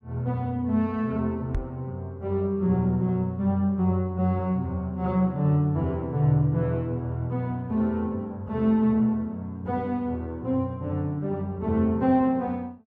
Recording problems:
microphone bump; at 1.5 s; peak 0 dB vs average level

